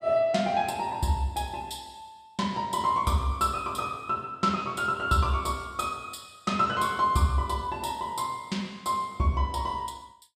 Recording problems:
none

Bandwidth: 15.5 kHz